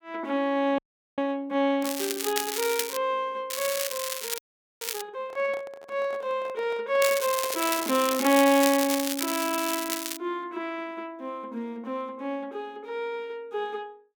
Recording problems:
audio freezing; at 1 s and at 4.5 s
crackle; from 2 to 3 s, from 3.5 to 5 s and from 7 to 10 s; loose cable, SNR 3 dB
microphone handling noise; from 5 to 8.5 s; peak -10 dB vs average level

